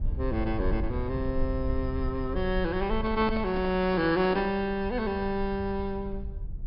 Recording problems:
treble missing; nothing above 5.5 kHz
rumble; below 72 Hz, SNR 8 dB
microphone handling noise; from 3 to 4.5 s; peak -5 dB vs average level

